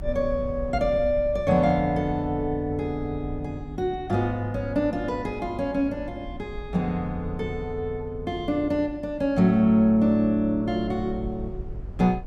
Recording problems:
low-frequency rumble; below 96 Hz, SNR 14 dB

